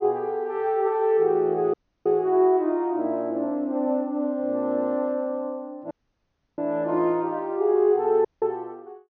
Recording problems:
low-pass filter; nothing above 6.6 kHz
dropout; at 1.5 s, at 6 s for 0.5 s and at 8.5 s

